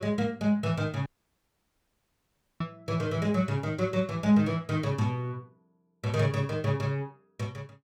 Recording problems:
audio cutting out; at 1 s for 1.5 s

